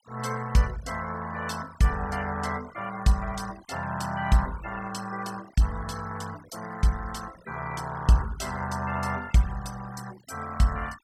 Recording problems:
noise reduction artefacts; signal-to-artefact ratio 17 dB

